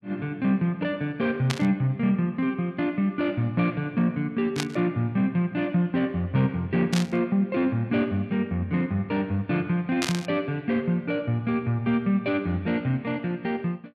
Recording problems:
static burst; 4 times, first at 1.5 s; peak +2 dB vs average level

